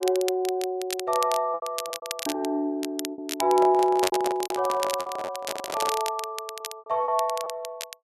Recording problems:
crackle; vinyl, SNR 9 dB
lost packets; 10% of the sound replaced, filled with repeated pitch periods
microphone handling noise; from 3.5 to 6 s; peak +2 dB vs average level

